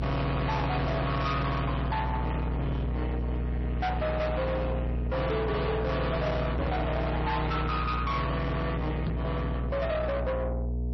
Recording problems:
lossy compression; MP3, log-spectral distance 2 dB, nothing above 5.7 kHz
distorted audio; soft clipping, signal-to-distortion ratio 7 dB
electrical hum; 60 Hz, harmonics up to 660 Hz, SNR 1 dB
knock on the microphone; at 6.5 s and at 9 s; peak +2 dB vs average level

